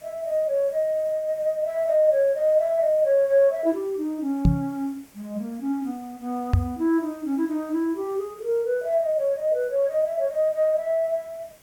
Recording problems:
hiss; slope -3 dB per octave, SNR 28 dB
knock on the microphone; at 4.5 s and at 6.5 s; peak +8 dB vs average level

